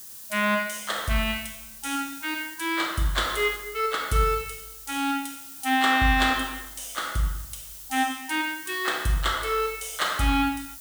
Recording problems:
background hiss; SNR 14 dB

